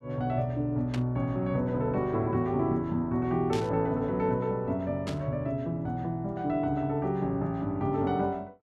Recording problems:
static burst; at 1 s, at 3.5 s and at 5 s; peak -6 dB vs average level

